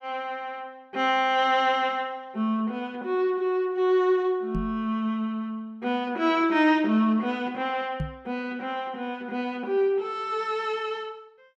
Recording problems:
microphone bump; at 4.5 s and at 8 s; peak -1 dB vs average level

